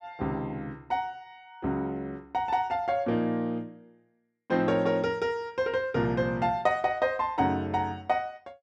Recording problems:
none

